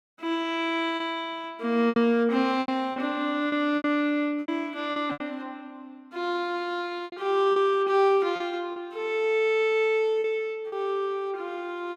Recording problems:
lost packets; 7% of the sound replaced, filled with repeated pitch periods

